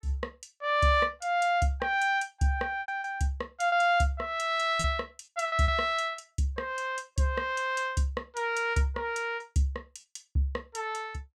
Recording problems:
packet loss; 4% of the sound replaced, filled with repeated pitch periods

